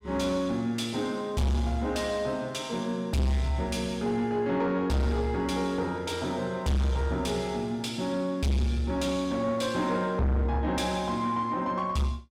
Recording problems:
distorted audio; soft clipping, signal-to-distortion ratio 7 dB

